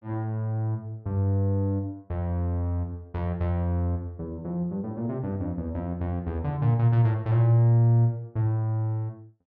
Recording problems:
none

